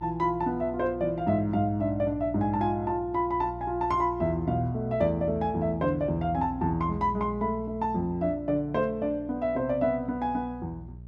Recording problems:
mains hum; 60 Hz, harmonics up to 420 Hz, SNR 16 dB

